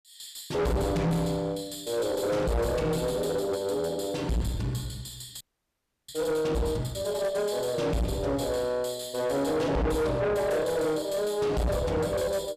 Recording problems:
distorted audio; soft clipping, signal-to-distortion ratio 5 dB
audio freezing; at 5.5 s for 0.5 s

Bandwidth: 14.5 kHz